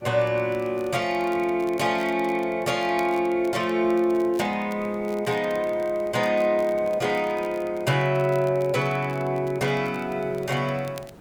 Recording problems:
hiss; slope -8 dB per octave, SNR 25 dB
crackle; vinyl, SNR 26 dB

